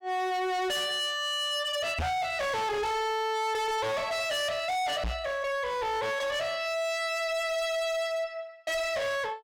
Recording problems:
distortion; hard clipping, signal-to-distortion ratio 6 dB
knock on the microphone; at 2 s and at 5 s; peak +4 dB vs average level

